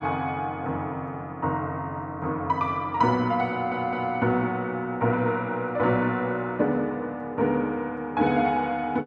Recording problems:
stutter; at 3.5 s

